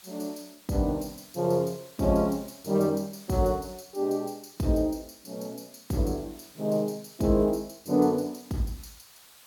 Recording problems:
background hiss; slope +1 dB per octave, SNR 24 dB

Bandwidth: 17.5 kHz